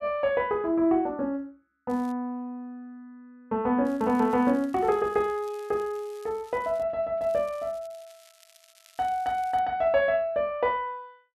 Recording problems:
crackling; at 2 s, from 4 to 7 s and from 7 to 9.5 s; loose cable, SNR 28 dB

